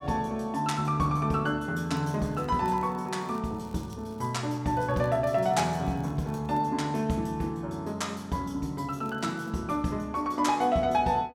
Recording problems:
crackling; from 2 to 4.5 s, from 4.5 to 6.5 s and at 9 s; loose cable, SNR 30 dB

